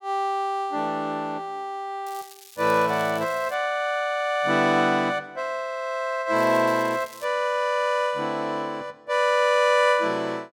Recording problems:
crackling; from 2 to 3.5 s and at 6.5 s; loose cable, SNR 21 dB

